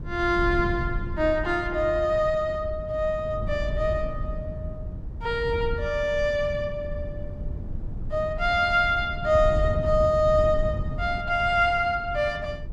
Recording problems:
wind on the microphone; below 120 Hz, SNR 9 dB

